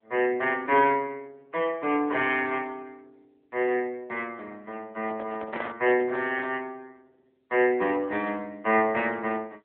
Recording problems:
phone line; 300 Hz to 3.5 kHz, AMR-NB
microphone handling noise; from 5 to 6.5 s; peak -7 dB vs average level

